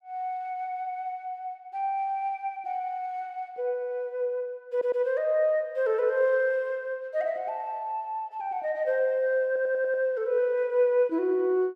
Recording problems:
audio stuttering; at 4.5 s and at 9.5 s

